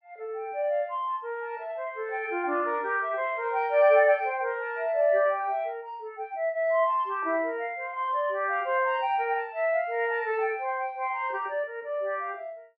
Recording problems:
treble missing; nothing above 5.5 kHz

